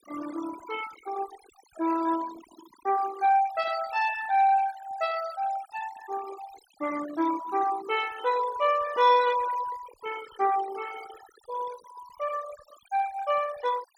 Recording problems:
noise reduction artefacts; signal-to-artefact ratio 14 dB

